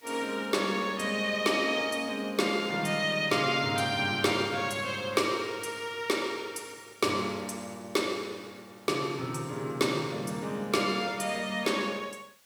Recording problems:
background hiss; slope +1 dB per octave, SNR 29 dB

